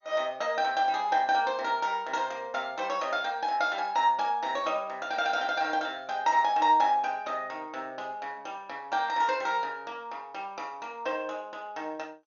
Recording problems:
lossy codec; MP2, log-spectral distance 2 dB, nothing above 6.7 kHz

